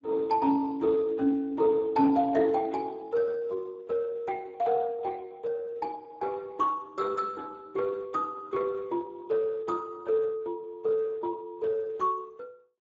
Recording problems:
lossy compression; Speex, log-spectral distance 3 dB

